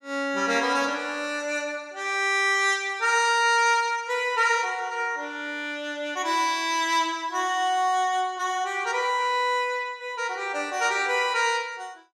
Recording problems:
none

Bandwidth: 15 kHz